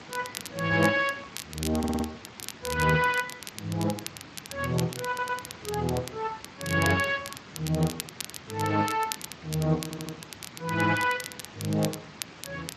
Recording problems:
lossy codec; Speex, log-spectral distance 11 dB
hiss; slope -3 dB per octave, SNR 17 dB
crackling; vinyl, SNR 11 dB
stutter; at 2 s, at 5 s and at 10 s

